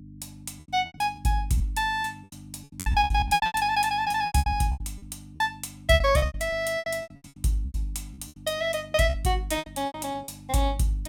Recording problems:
hum; 50 Hz, harmonics up to 300 Hz, SNR 20 dB
lost packets; 19% of the sound replaced, filled with repeated pitch periods

